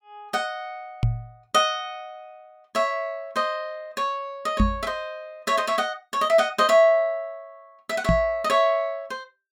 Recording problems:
microphone bump; at 1 s, at 4.5 s and at 8 s; peak +6 dB vs average level

